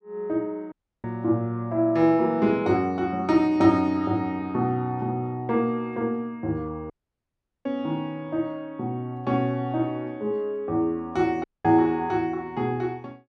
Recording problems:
dropout; at 0.5 s, at 7 s for 1 s and at 11 s

